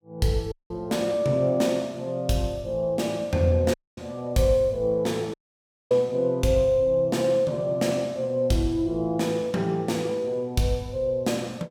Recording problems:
audio cutting out; at 0.5 s, at 3.5 s and at 5.5 s for 0.5 s

